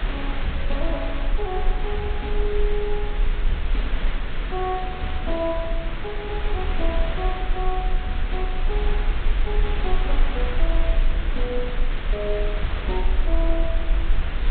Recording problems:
low-pass filter; nothing above 4 kHz
hum; 50 Hz, harmonics up to 500 Hz, SNR 18 dB
background hiss; SNR 2 dB
low-frequency rumble; below 40 Hz, strongest tone 22 Hz, SNR -3 dB

